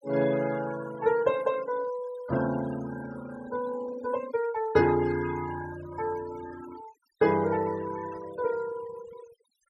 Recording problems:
denoising artefacts; signal-to-artefact ratio 16 dB

